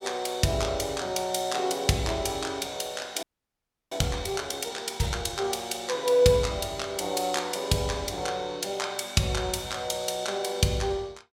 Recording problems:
frozen audio; at 3 s for 0.5 s

